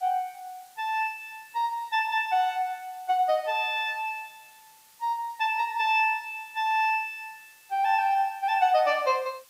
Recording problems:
hiss; slope +1 dB per octave, SNR 27 dB

